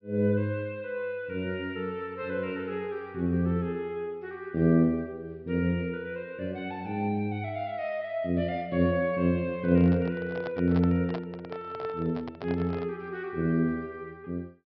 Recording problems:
treble missing; nothing above 5.5 kHz
handling noise; from 9.5 to 13 s; peak -4 dB vs average level

